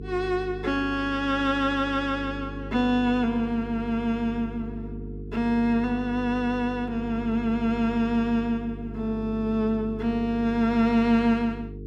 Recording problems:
mains hum; 50 Hz, harmonics up to 450 Hz, SNR 12 dB

